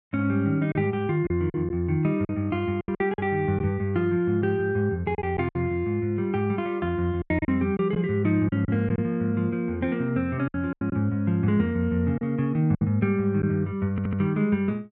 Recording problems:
lost packets; 7% of the sound replaced, filled with silence
stutter; at 14 s

